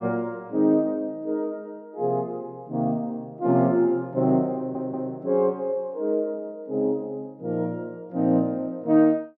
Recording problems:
stutter; at 4.5 s

